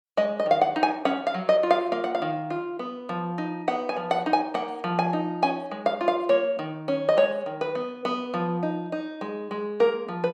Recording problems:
none

